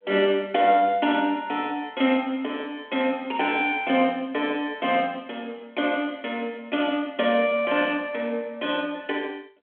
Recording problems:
phone line; 220 Hz to 3.4 kHz, G.726

